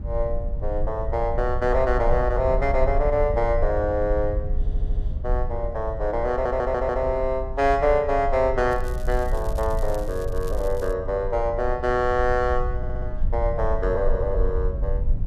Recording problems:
low-frequency rumble; below 60 Hz, SNR 5 dB
audio stuttering; at 4.5 s, at 6.5 s and at 13 s
crackle; from 8.5 to 11 s; loose cable, SNR 23 dB

